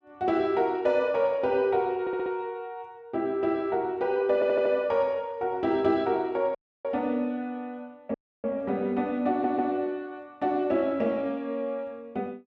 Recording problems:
audio stuttering; at 2 s, at 4.5 s and at 9.5 s
audio cutting out; at 6.5 s and at 8 s

